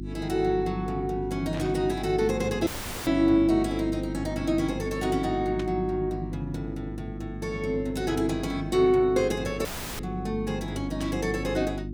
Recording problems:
electrical hum; 50 Hz, harmonics up to 350 Hz, SNR 8 dB
static burst; at 1.5 s, at 5.5 s and at 11 s; peak -9 dB vs average level
audio cutting out; at 2.5 s and at 9.5 s

